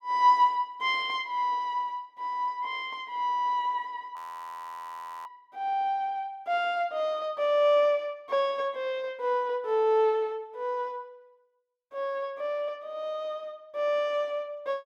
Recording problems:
frozen audio; at 4 s for 1 s

